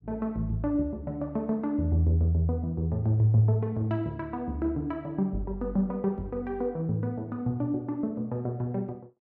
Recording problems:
none

